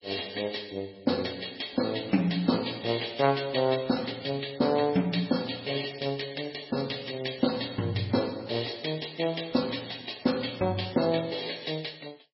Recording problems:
lossy codec; MP3, log-spectral distance 11 dB, nothing above 4.8 kHz

